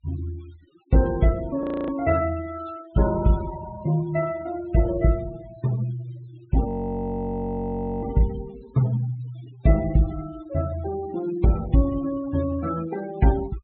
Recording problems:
low-pass filter; nothing above 4 kHz
noise reduction artefacts; signal-to-artefact ratio 16 dB
audio freezing; at 1.5 s and at 6.5 s for 1.5 s

